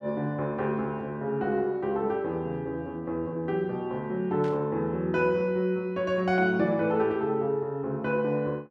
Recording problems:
static burst; at 4.5 s; peak -13 dB vs average level

